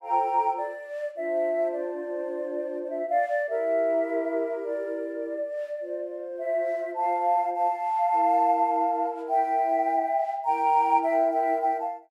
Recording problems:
none

